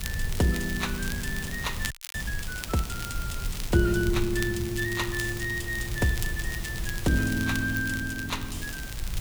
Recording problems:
hiss; slope -2 dB per octave, SNR 11 dB
rumble; below 88 Hz, SNR 8 dB
crackling; vinyl, SNR 11 dB
audio freezing; at 2 s

